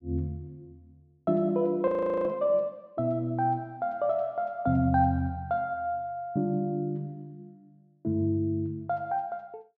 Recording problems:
audio freezing; at 2 s

